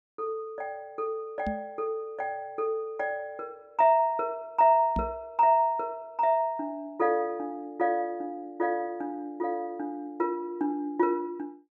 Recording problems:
microphone thump; at 1.5 s and at 5 s; peak 0 dB vs average level

